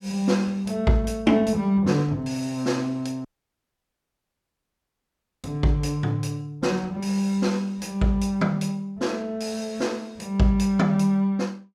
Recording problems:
audio cutting out; at 3.5 s for 2 s

